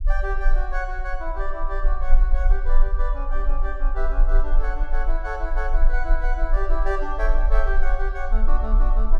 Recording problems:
rumble; below 36 Hz, strongest tone 22 Hz, SNR -6 dB

